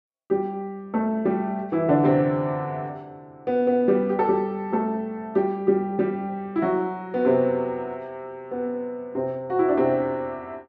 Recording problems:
none

